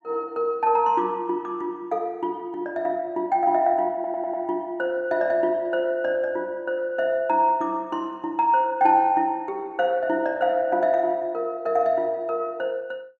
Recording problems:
stutter; at 4 s

